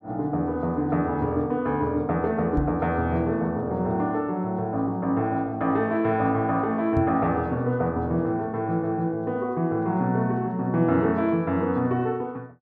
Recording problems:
knock on the microphone; at 2.5 s and at 7 s; peak +2 dB vs average level

